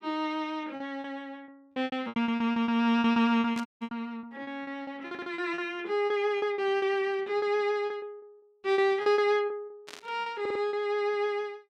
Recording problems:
packet loss; 16% of the sound replaced, filled with repeated pitch periods
static burst; at 3.5 s and at 10 s; peak -8 dB vs average level
audio cutting out; at 3.5 s
audio stuttering; at 5 s and at 10 s

